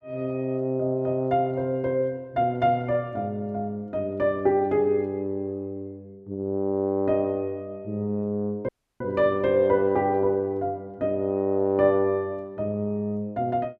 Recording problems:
audio cutting out; at 8.5 s

